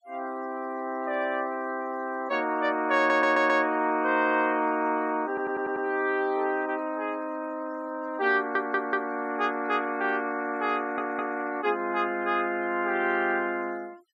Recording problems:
noise reduction artefacts; signal-to-artefact ratio 25 dB
audio stuttering; 4 times, first at 3 s

